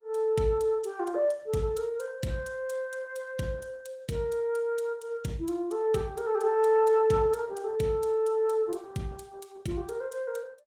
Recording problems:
lossy codec; Opus, log-spectral distance 2 dB, nothing above 19 kHz

